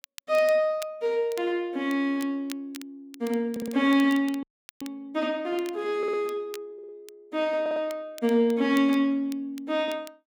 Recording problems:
crackling; vinyl, SNR 21 dB
audio stuttering; 4 times, first at 3.5 s
frozen audio; at 4.5 s

